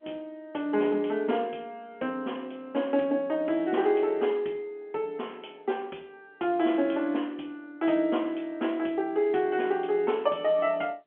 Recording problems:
phone line; 240 Hz to 3.3 kHz, G.711

